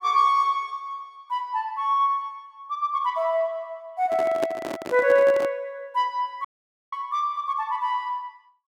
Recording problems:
handling noise; from 4 to 5.5 s; peak 0 dB vs average level
audio cutting out; at 6.5 s

